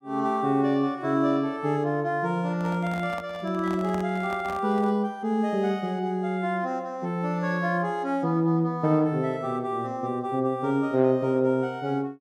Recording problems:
microphone handling noise; from 2.5 to 5 s; peak -6 dB vs average level

